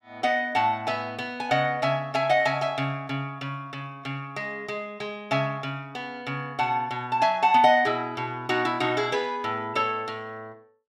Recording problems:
none

